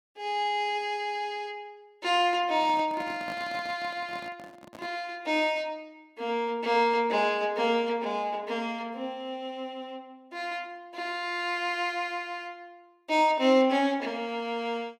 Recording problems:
microphone handling noise; from 2.5 to 5 s; peak -9 dB vs average level

